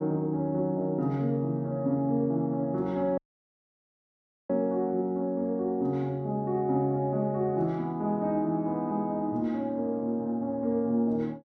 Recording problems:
audio cutting out; at 3 s for 1.5 s

